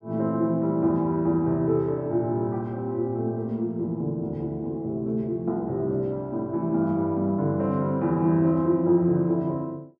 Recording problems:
none

